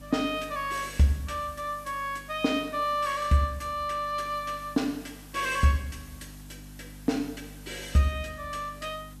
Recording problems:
hum; 50 Hz, harmonics up to 300 Hz, SNR 19 dB
hiss; slope -2 dB per octave, SNR 23 dB

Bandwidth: 14 kHz